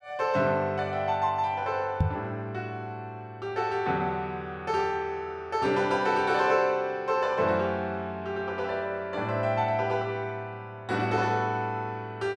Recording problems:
microphone bump; at 2 s; peak +7 dB vs average level

